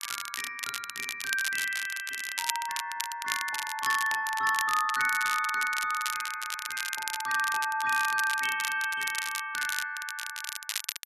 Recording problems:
crackling; vinyl, SNR 6 dB

